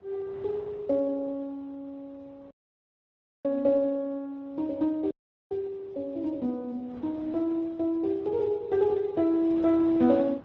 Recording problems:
codec artefacts; Speex, then Opus, log-spectral distance 2 dB
wind on the microphone; below 790 Hz, SNR 24 dB
audio cutting out; at 2.5 s for 1 s and at 5 s

